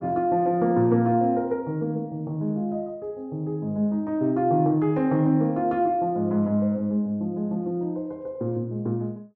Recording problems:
none

